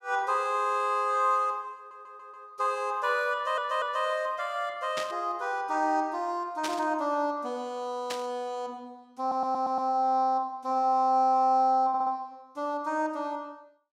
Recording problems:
audio stuttering; 4 times, first at 2 s
static burst; at 5 s, at 6.5 s and at 8 s; peak -2 dB vs average level

